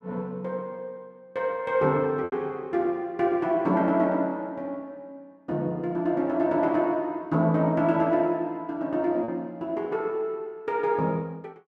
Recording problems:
packet loss; 1.1% of the sound replaced, filled with repeated pitch periods

